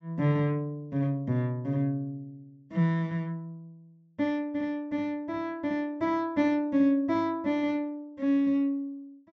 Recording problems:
low-pass filter; nothing above 8 kHz

